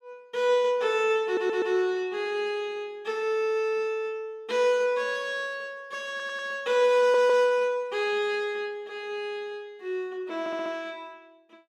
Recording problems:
audio stuttering; 4 times, first at 1.5 s

